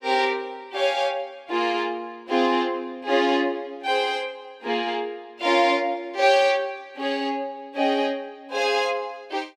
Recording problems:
none

